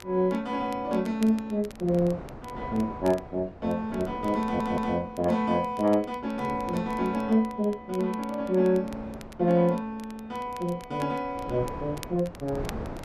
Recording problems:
wind noise; below 660 Hz, SNR 16 dB
crackling; vinyl, SNR 23 dB
audio stuttering; at 4.5 s

